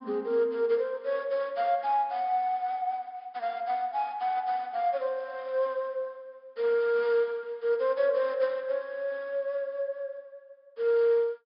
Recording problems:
treble cut off; nothing above 5.5 kHz

